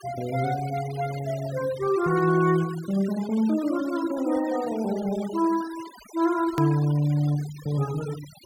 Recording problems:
denoising artefacts; signal-to-artefact ratio 17 dB
click at an edit; at 6.5 s

